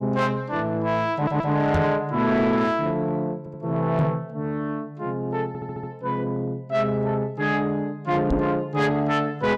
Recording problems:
distortion; soft clipping, signal-to-distortion ratio 11 dB
audio stuttering; at 1 s, at 3.5 s and at 5.5 s
microphone bump; at 1.5 s, at 4 s and at 8.5 s; peak +6 dB vs average level

